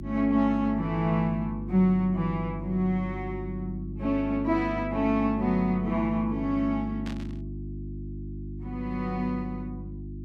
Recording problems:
hum; 50 Hz, harmonics up to 350 Hz, SNR 9 dB
burst of static; at 7 s; peak -11 dB vs average level

